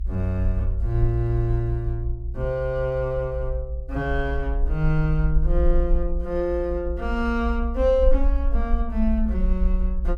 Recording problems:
low-frequency rumble; below 58 Hz, SNR 2 dB

